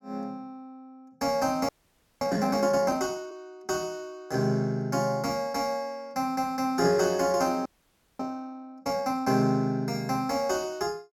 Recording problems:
audio freezing; at 1.5 s for 0.5 s and at 7.5 s for 0.5 s

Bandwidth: 17 kHz